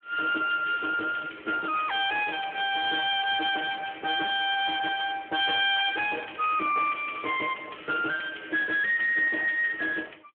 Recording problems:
telephone audio; 260 Hz to 3.3 kHz, Speex
distortion; hard clipping, uneven, signal-to-distortion ratio 9 dB

